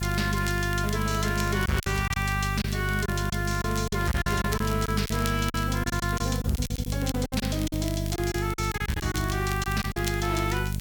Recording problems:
distortion; hard clipping, signal-to-distortion ratio 7 dB
hum; 50 Hz, harmonics up to 450 Hz, SNR 2 dB
hiss; slope +3 dB per octave, SNR 16 dB
crackling; vinyl, SNR 14 dB
packet loss; 10% of the sound replaced, filled with silence

